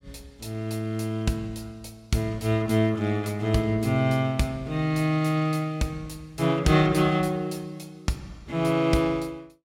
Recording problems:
none

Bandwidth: 17 kHz